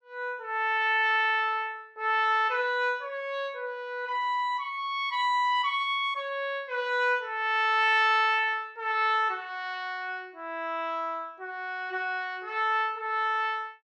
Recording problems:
none

